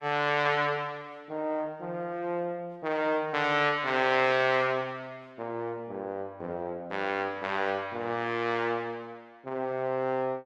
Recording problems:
lossy compression; Opus, log-spectral distance 2 dB

